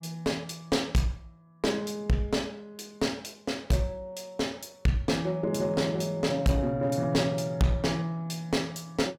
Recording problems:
distorted audio; hard clipping, uneven, signal-to-distortion ratio 9 dB

